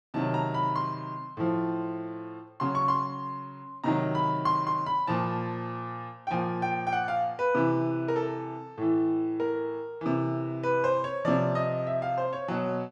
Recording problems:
none

